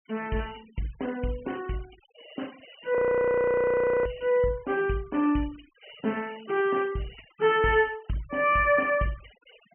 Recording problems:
treble missing; nothing above 3.1 kHz
denoising artefacts; signal-to-artefact ratio 25 dB
audio freezing; at 3 s for 1 s

